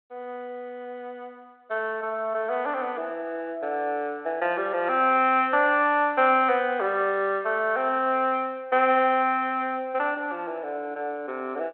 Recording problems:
telephone audio; 280 Hz to 3.3 kHz, G.726

